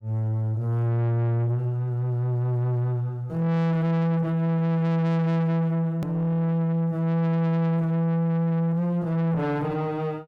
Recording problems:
distortion; soft clipping, signal-to-distortion ratio 7 dB
hard cut with a click; at 6 s

